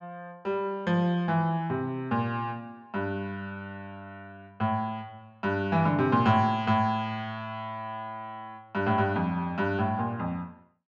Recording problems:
none

